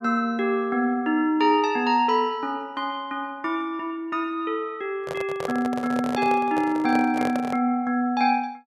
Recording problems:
handling noise; from 5 to 7.5 s; peak -2 dB vs average level

